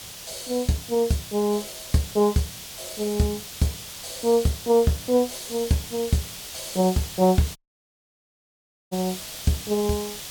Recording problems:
hiss; slope +1 dB per octave, SNR 11 dB
audio cutting out; at 7.5 s for 1.5 s

